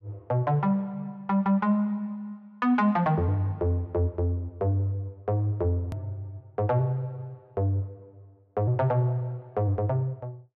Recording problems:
edit click; at 6 s

